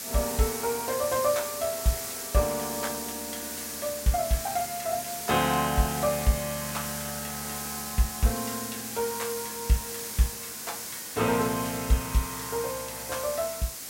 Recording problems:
hiss; SNR 4 dB

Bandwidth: 16 kHz